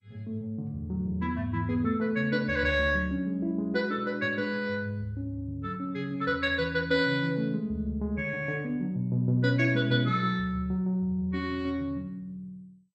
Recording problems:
lossy codec; MP2, log-spectral distance 2 dB

